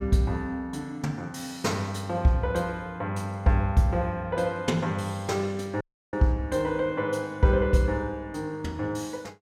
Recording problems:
audio cutting out; at 6 s

